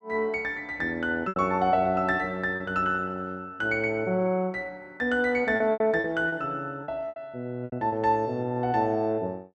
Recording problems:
packet loss; 6% of the sound replaced, filled with repeated pitch periods

